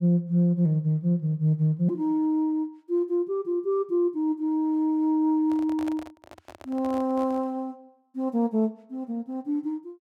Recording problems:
microphone handling noise; from 5.5 to 7.5 s; peak -10 dB vs average level

